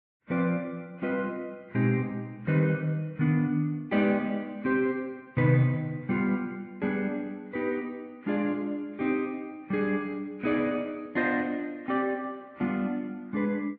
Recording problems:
lossy codec; Vorbis, log-spectral distance 2 dB, nothing above 13.1 kHz

